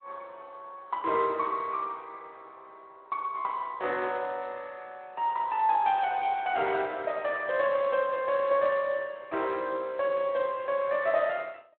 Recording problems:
phone line; 320 Hz to 3.7 kHz, Speex

